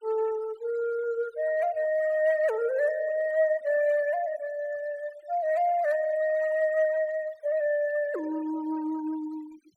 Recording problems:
noise reduction artefacts; signal-to-artefact ratio 23 dB

